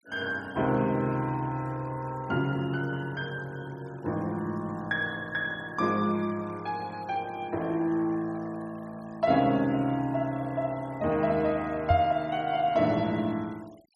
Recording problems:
noise reduction artefacts; signal-to-artefact ratio 26 dB
knock on the microphone; at 12 s; peak +5 dB vs average level

